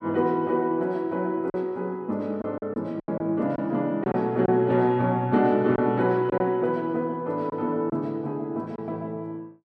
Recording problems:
packet loss; 4% of the sound replaced, filled with silence

